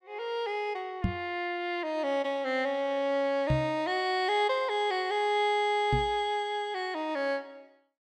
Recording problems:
microphone bump; at 1 s, at 3.5 s and at 6 s; peak +5 dB vs average level

